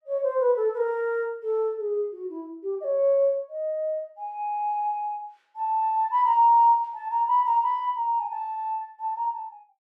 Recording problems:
none

